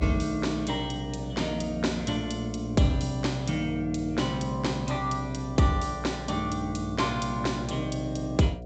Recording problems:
low-pass filter; nothing above 8 kHz
hum; 60 Hz, harmonics up to 720 Hz, SNR 10 dB

